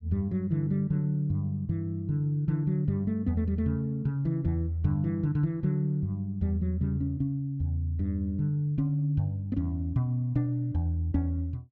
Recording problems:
none

